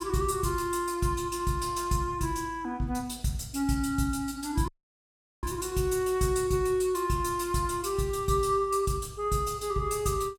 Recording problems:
dropout; at 4.5 s for 1 s

